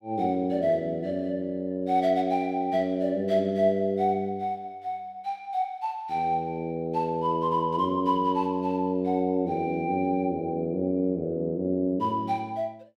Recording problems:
none

